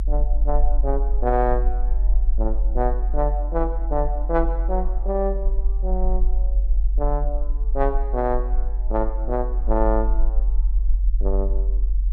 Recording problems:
low-frequency rumble; below 46 Hz, strongest tone 44 Hz, SNR -2 dB

